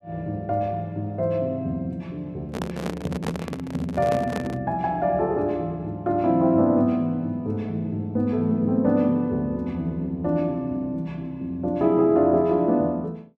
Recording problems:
microphone handling noise; from 2.5 to 4.5 s; peak 0 dB vs average level

